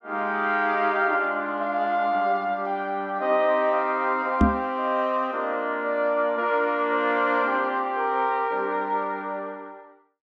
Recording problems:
microphone bump; at 4.5 s; peak +8 dB vs average level

